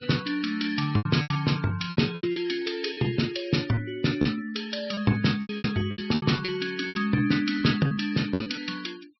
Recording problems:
treble cut off; nothing above 5.6 kHz
noise reduction artefacts; signal-to-artefact ratio 21 dB
lost packets; 11% of the sound replaced, filled with repeated pitch periods

